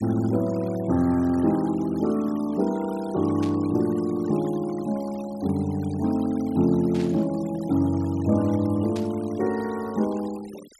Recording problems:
denoising artefacts; signal-to-artefact ratio 21 dB
burst of static; at 3.5 s, at 7 s and at 9 s; peak -11 dB vs average level

